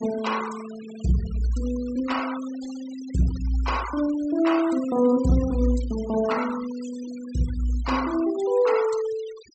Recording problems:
low-pass filter; nothing above 8 kHz
denoising artefacts; signal-to-artefact ratio 16 dB

